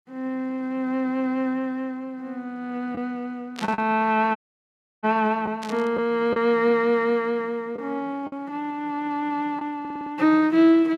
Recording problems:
lost packets; 2% of the sound replaced, filled with the last packet
static burst; at 3.5 s and at 5.5 s; peak -6 dB vs average level
audio cutting out; at 4.5 s for 0.5 s
audio stuttering; at 10 s

